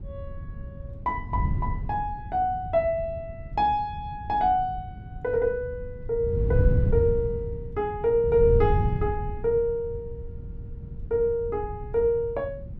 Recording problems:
wind noise; below 120 Hz, SNR 6 dB

